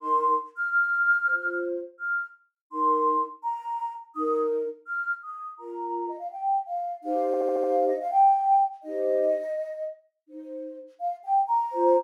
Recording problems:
audio stuttering; at 7.5 s

